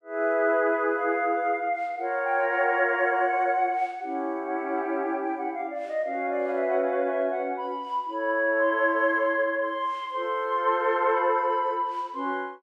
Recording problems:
none

